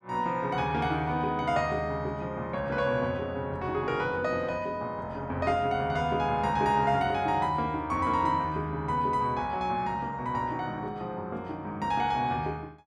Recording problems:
none

